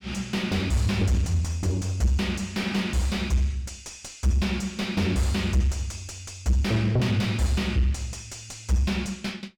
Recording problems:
distortion; soft clipping, signal-to-distortion ratio 6 dB

